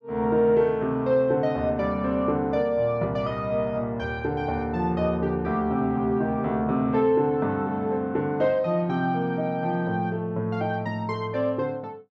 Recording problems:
none

